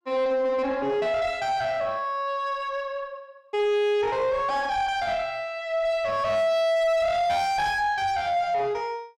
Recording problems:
distortion; soft clipping, signal-to-distortion ratio 6 dB

